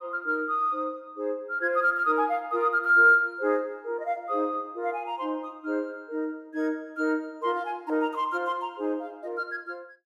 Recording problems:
none

